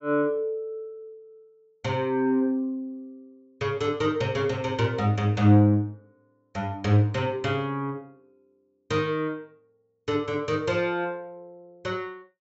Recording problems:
treble missing; nothing above 8 kHz

